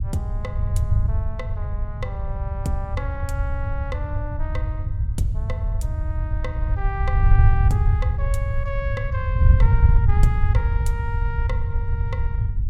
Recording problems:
wind on the microphone; below 96 Hz, SNR -10 dB

